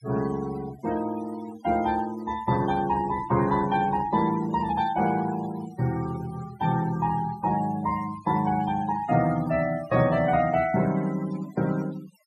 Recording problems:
noise reduction artefacts; signal-to-artefact ratio 17 dB

